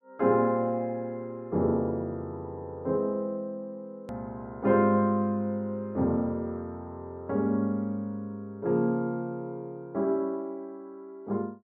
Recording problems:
edit click; at 4 s

